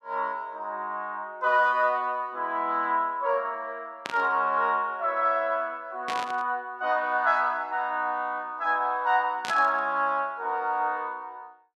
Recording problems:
static burst; at 4 s, at 6 s and at 9.5 s; peak -2 dB vs average level

